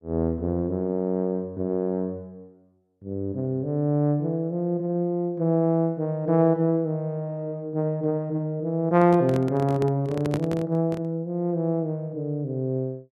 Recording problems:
handling noise; from 9 to 11 s; peak -1 dB vs average level

